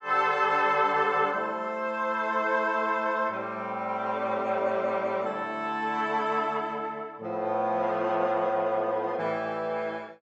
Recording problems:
none

